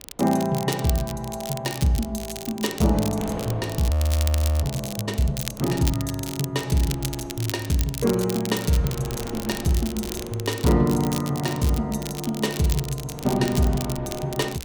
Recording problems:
wind noise; below 610 Hz, SNR 17 dB
crackling; vinyl, SNR 10 dB
audio freezing; at 4 s for 0.5 s

